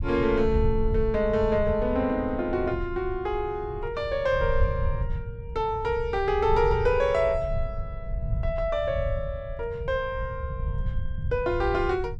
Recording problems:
low-frequency rumble; below 98 Hz, SNR 7 dB

